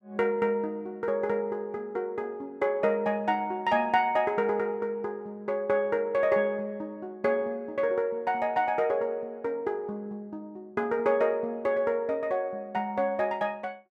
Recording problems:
none

